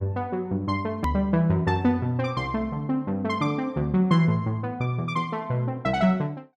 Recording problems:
hard cut with a click; at 1 s

